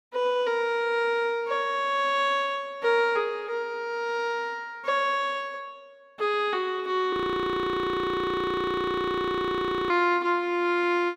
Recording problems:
frozen audio; at 7 s for 3 s

